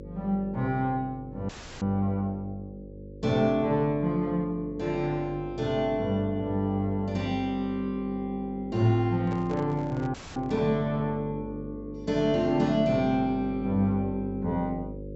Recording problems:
treble cut off; nothing above 7.8 kHz
electrical hum; 50 Hz, harmonics up to 550 Hz, SNR 14 dB
audio cutting out; at 1.5 s and at 10 s
microphone handling noise; from 9.5 to 11 s; peak -9 dB vs average level

